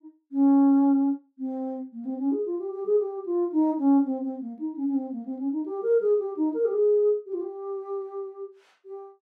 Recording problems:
none

